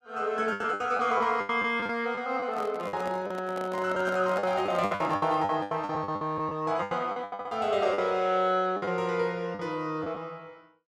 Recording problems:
lost packets; 14% of the sound replaced, filled with the last packet
microphone handling noise; from 2.5 to 5.5 s; peak -5 dB vs average level

